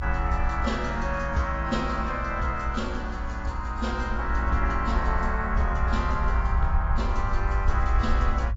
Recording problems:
codec artefacts; AAC, log-spectral distance 2 dB, nothing above 7.3 kHz
low-frequency rumble; below 60 Hz, SNR 1 dB

